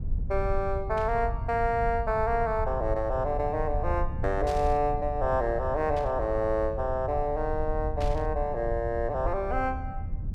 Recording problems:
low-frequency rumble; below 84 Hz, SNR 7 dB
static burst; 4 times, first at 1 s; peak -10 dB vs average level

